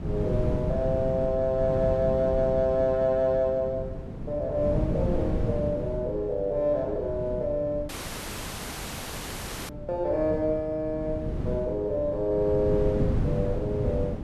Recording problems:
wind on the microphone; below 230 Hz, SNR 5 dB
dropout; at 8 s for 2 s

